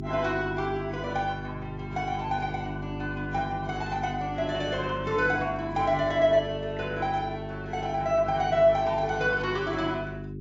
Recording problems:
lossy compression; AAC, log-spectral distance 2 dB
hum; 50 Hz, harmonics up to 400 Hz, SNR 9 dB

